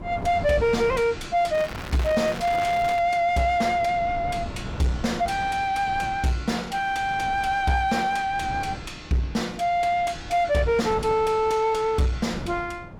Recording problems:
distortion; soft clipping, signal-to-distortion ratio 9 dB
wind on the microphone; below 360 Hz, SNR 14 dB
crackle; from 1.5 to 3 s; loose cable, SNR 13 dB

